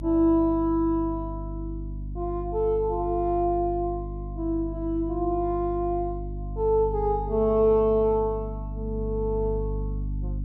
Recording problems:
hum; 50 Hz, harmonics up to 300 Hz, SNR 9 dB

